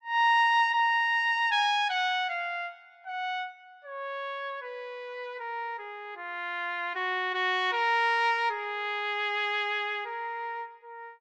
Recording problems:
none

